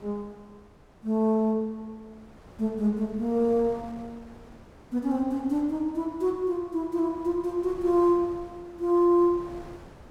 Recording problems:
wind on the microphone; below 720 Hz, SNR 23 dB

